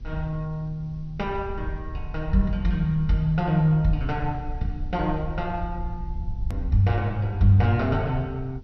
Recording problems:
treble missing; nothing above 6.1 kHz
hum; 60 Hz, harmonics up to 840 Hz, SNR 27 dB
hiss; SNR 40 dB
rumble; below 72 Hz, SNR 11 dB
hard cut with a click; at 6.5 s

